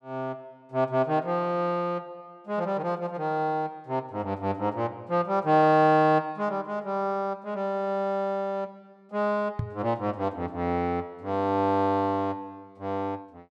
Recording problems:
microphone bump; at 9.5 s; peak +1 dB vs average level

